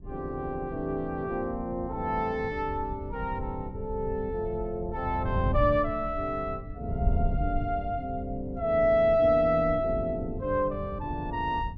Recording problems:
wind noise; below 110 Hz, SNR 8 dB

